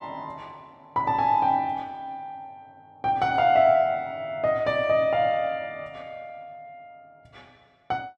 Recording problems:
none

